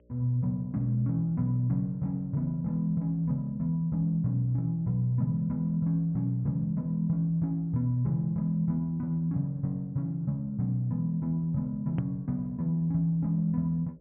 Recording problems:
treble cut off; nothing above 3.2 kHz
hum; 60 Hz, harmonics up to 600 Hz, SNR 32 dB
hard cut with a click; at 12 s

